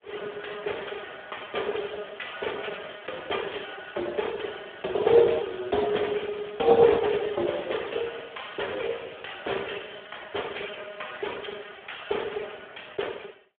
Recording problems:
telephone audio; 340 Hz to 3.6 kHz, Speex
crackling; from 4.5 to 10 s; loose cable, SNR 23 dB

